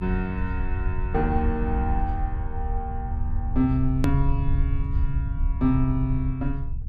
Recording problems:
rumble; below 76 Hz, SNR 1 dB
edit click; at 4 s

